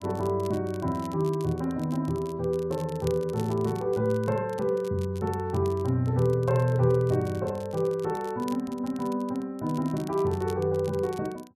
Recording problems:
crackling; vinyl, SNR 23 dB

